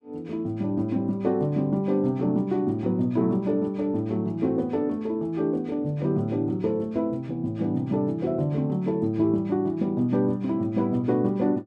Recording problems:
none

